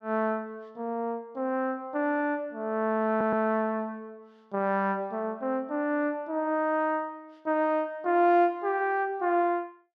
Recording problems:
stutter; at 3 s

